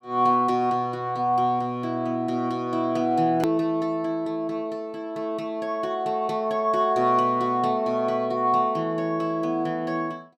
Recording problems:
hard cut with a click; at 3.5 s

